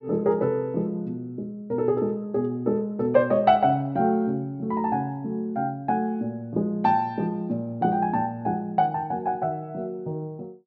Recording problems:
none

